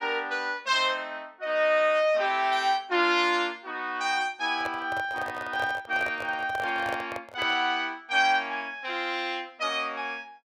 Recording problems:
handling noise; from 4.5 to 7.5 s; peak -3 dB vs average level

